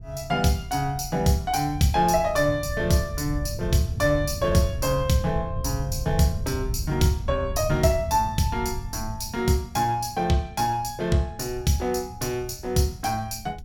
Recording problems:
wind noise; below 110 Hz, SNR 10 dB

